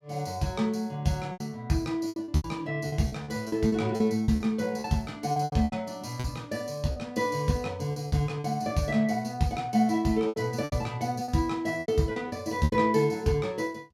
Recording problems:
packet loss; 11% of the sound replaced, filled with repeated pitch periods

